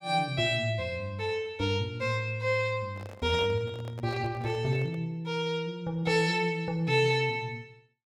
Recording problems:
handling noise; from 3 to 5 s; peak -11 dB vs average level

